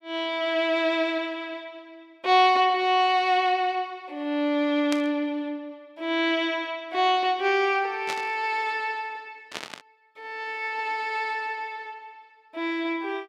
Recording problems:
static burst; at 5 s, at 8 s and at 9.5 s; peak -3 dB vs average level

